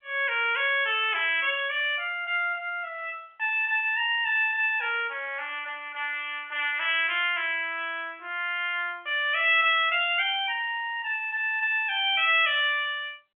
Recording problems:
phone line; 300 Hz to 3.4 kHz, G.711

